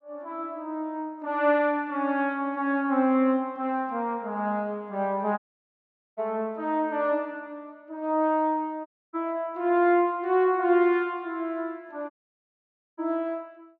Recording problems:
audio cutting out; at 5.5 s for 1 s, at 9 s and at 12 s for 1 s

